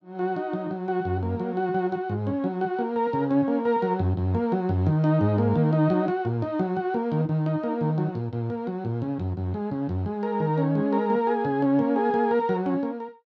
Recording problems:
none

